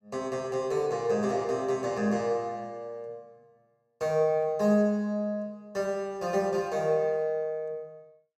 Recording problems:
none

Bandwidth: 14.5 kHz